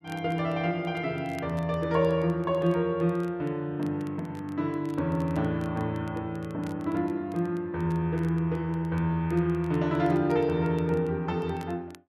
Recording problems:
crackle; vinyl, SNR 28 dB

